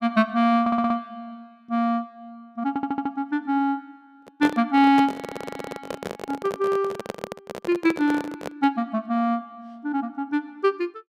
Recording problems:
stutter; at 0.5 s, at 2.5 s and at 5 s
handling noise; from 4 to 8.5 s; peak -2 dB vs average level

